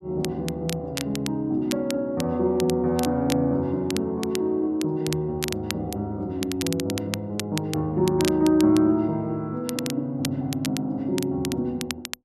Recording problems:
crackling; vinyl, SNR 11 dB

